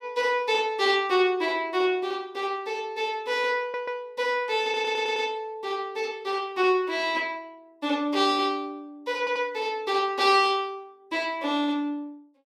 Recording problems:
stutter; at 3.5 s, at 4.5 s and at 9 s

